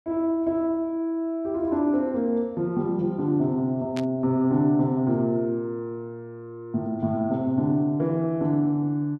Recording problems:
burst of static; at 4 s; peak -8 dB vs average level

